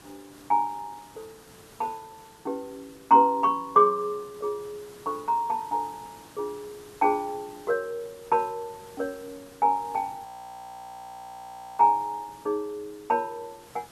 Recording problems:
background hiss; slope -3 dB per octave, SNR 24 dB
audio freezing; at 10 s for 1.5 s

